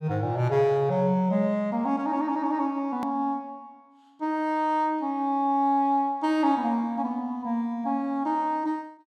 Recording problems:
hard cut with a click; at 3 s

